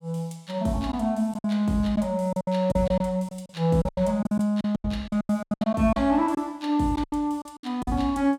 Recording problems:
packet loss; 14% of the sound replaced, filled with silence

